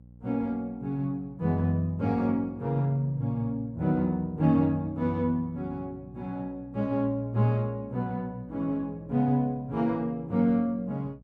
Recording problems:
electrical hum; 60 Hz, harmonics up to 540 Hz, SNR 22 dB

